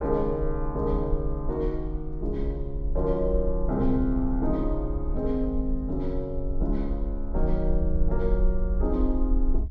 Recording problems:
rumble; below 50 Hz, SNR 2 dB

